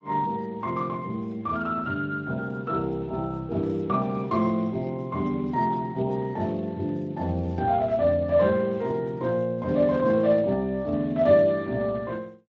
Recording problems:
lossy codec; Speex, log-spectral distance 2 dB

